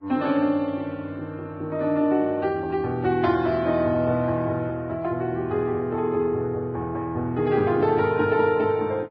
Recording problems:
lossy codec; Vorbis, log-spectral distance 2 dB

